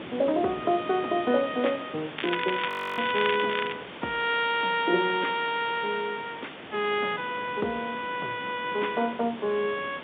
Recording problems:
phone line; 260 Hz to 3.7 kHz, G.711
hiss; SNR 14 dB
wind on the microphone; below 490 Hz, SNR 18 dB
crackle; from 2 to 3.5 s; loose cable, SNR 6 dB
frozen audio; at 2.5 s

